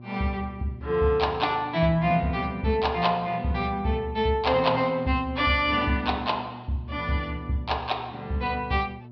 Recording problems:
low-pass filter; nothing above 5.5 kHz
electrical hum; 60 Hz, harmonics up to 960 Hz, SNR 18 dB

